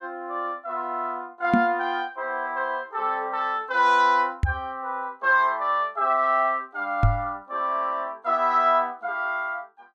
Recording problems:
knock on the microphone; at 1.5 s, at 4.5 s and at 7 s; peak +7 dB vs average level

